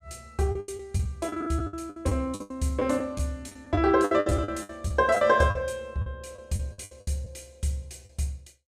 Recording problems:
lost packets; 15% of the sound replaced, filled with the last packet

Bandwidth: 14.5 kHz